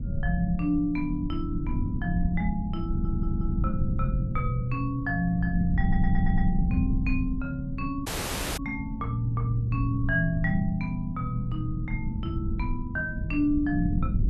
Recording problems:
low-frequency rumble; below 130 Hz, SNR 2 dB
audio stuttering; at 3 s and at 6 s
dropout; at 8 s for 0.5 s

